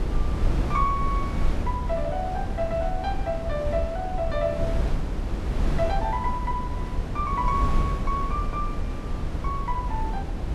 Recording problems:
wind noise; below 110 Hz, SNR 0 dB

